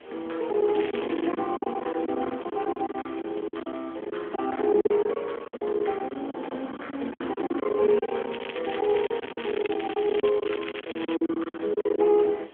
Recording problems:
telephone audio; 220 Hz to 3.4 kHz, AMR-NB
background hiss; SNR 27 dB
wind noise; below 760 Hz, SNR 21 dB
lost packets; 16% of the sound replaced, filled with silence
crackle; at 1 s and from 8.5 to 11 s; loose cable, SNR 12 dB

